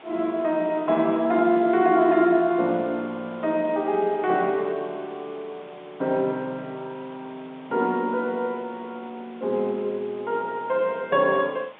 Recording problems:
phone line; 280 Hz to 4 kHz, G.711
background hiss; SNR 24 dB

